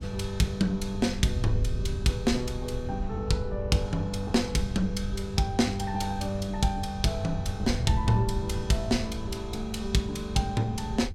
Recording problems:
wind on the microphone; below 96 Hz, SNR 7 dB

